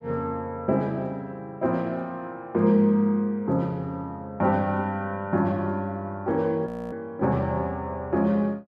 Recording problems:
audio freezing; at 6.5 s

